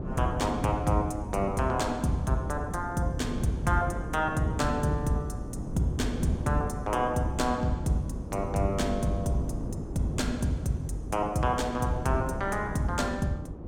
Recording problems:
wind noise; below 270 Hz, SNR 8 dB

